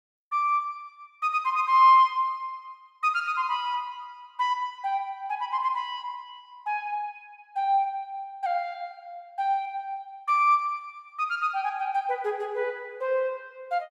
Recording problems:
none

